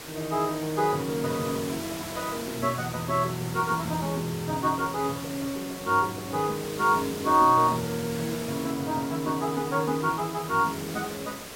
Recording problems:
hiss; slope -3 dB per octave, SNR 11 dB

